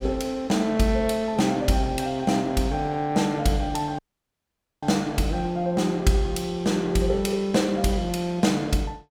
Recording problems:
audio cutting out; at 4 s for 1 s

